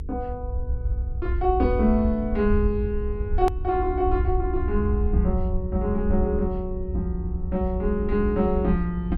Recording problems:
electrical hum; 50 Hz, harmonics up to 500 Hz, SNR 19 dB
low-frequency rumble; below 72 Hz, SNR 3 dB
hard cut with a click; at 3.5 s

